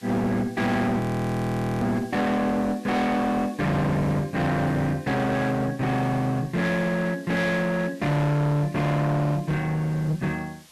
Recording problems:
distortion; hard clipping, uneven, signal-to-distortion ratio 7 dB
background hiss; slope 0 dB per octave, SNR 25 dB
frozen audio; at 1 s for 1 s

